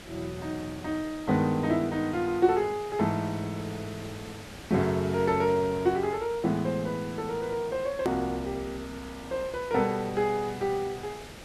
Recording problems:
background hiss; SNR 15 dB
hard cut with a click; at 8 s

